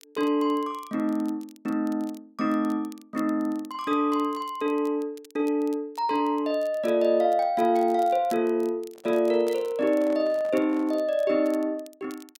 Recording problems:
crackle; vinyl, SNR 27 dB
microphone handling noise; from 9 to 11 s; peak -11 dB vs average level

